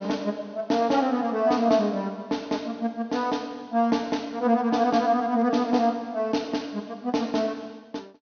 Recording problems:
treble missing; nothing above 6.3 kHz

